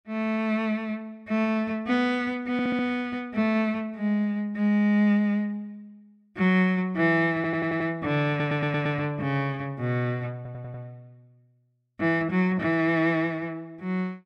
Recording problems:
audio stuttering; 4 times, first at 2.5 s

